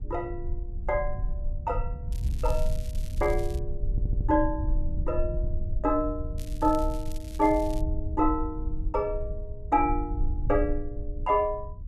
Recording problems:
low-frequency rumble; below 62 Hz, SNR 5 dB
crackle; from 2 to 3.5 s and from 6.5 to 8 s; loose cable, SNR 20 dB
stutter; at 4 s

